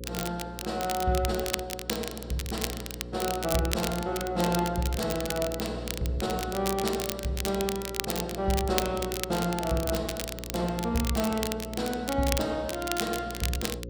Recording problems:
hum; 60 Hz, harmonics up to 540 Hz, SNR 10 dB
crackling; vinyl, SNR 5 dB

